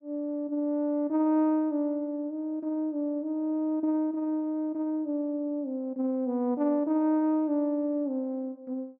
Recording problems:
none

